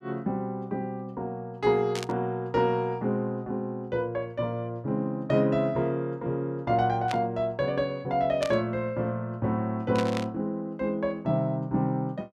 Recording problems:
burst of static; 4 times, first at 2 s; peak -2 dB vs average level

